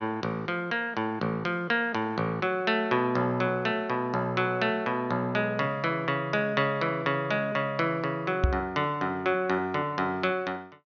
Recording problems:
low-pass filter; nothing above 6.6 kHz
microphone thump; at 8.5 s; peak +7 dB vs average level

